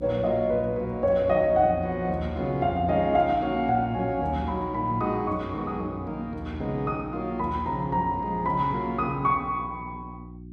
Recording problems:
electrical hum; 60 Hz, harmonics up to 360 Hz, SNR 14 dB

